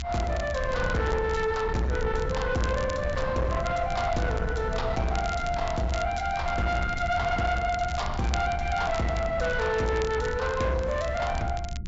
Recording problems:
treble cut off; nothing above 8 kHz
distortion; soft clipping, signal-to-distortion ratio 10 dB
rumble; below 150 Hz, SNR 7 dB
crackling; vinyl, SNR 18 dB

